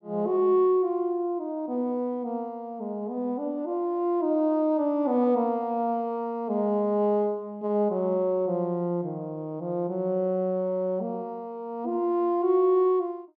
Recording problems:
none

